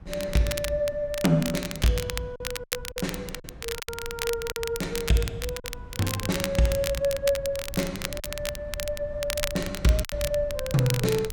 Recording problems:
low-frequency rumble; below 98 Hz, SNR 15 dB
crackling; vinyl, SNR 7 dB
lost packets; 4% of the sound replaced, filled with silence

